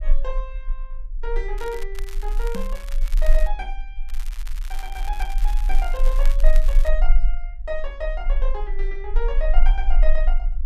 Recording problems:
low-frequency rumble; below 32 Hz, strongest tone 20 Hz, SNR -7 dB
crackling; at 1.5 s, from 2 to 3.5 s and from 4 to 7 s; loose cable, SNR 10 dB
microphone thump; at 2.5 s; peak +4 dB vs average level

